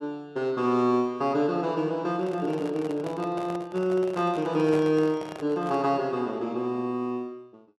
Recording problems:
microphone handling noise; from 2 to 6 s; peak -5 dB vs average level

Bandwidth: 12 kHz